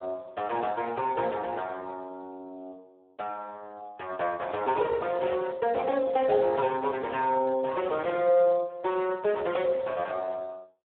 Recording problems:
telephone audio; 320 Hz to 3.4 kHz, Speex

